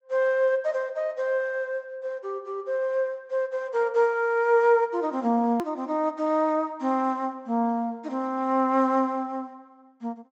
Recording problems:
treble missing; nothing above 8 kHz
hard cut with a click; at 5.5 s

